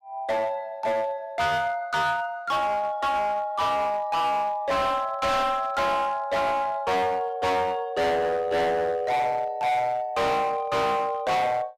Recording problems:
distortion; hard clipping, uneven, signal-to-distortion ratio 6 dB

